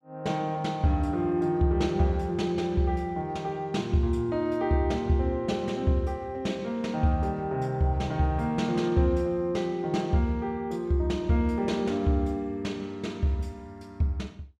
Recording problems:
none

